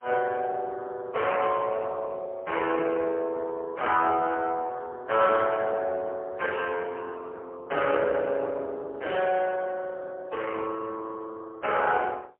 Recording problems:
phone line; 300 Hz to 3.1 kHz, AMR-NB, then MP3

